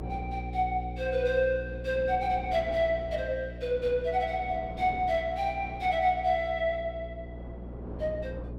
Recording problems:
hum; 60 Hz, harmonics up to 540 Hz, SNR 11 dB
wind on the microphone; below 550 Hz, SNR 19 dB

